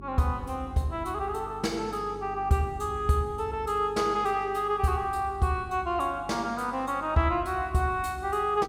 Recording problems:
hum; 50 Hz, harmonics up to 400 Hz, SNR 18 dB

